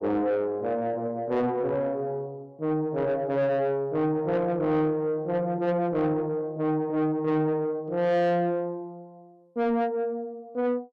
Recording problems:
distorted audio; soft clipping, signal-to-distortion ratio 11 dB

